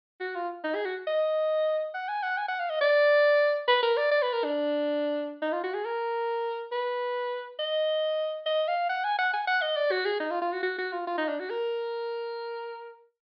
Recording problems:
low-pass filter; nothing above 5.5 kHz

